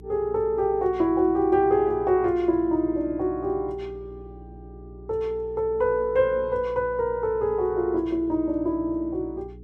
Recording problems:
hum; 60 Hz, harmonics up to 420 Hz, SNR 20 dB

